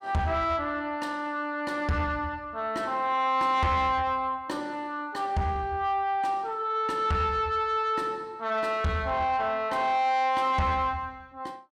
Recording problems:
distorted audio; soft clipping, signal-to-distortion ratio 12 dB

